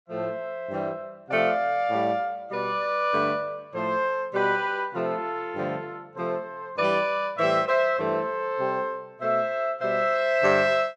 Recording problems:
none

